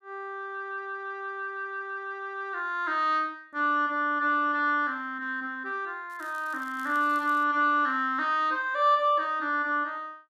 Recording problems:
crackle; from 6 to 7.5 s; loose cable, SNR 27 dB

